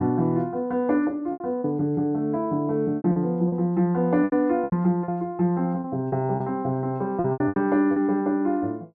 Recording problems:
lost packets; 9% of the sound replaced, filled with repeated pitch periods

